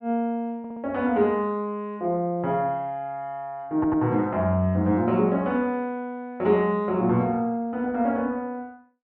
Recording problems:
audio stuttering; at 0.5 s and at 4 s

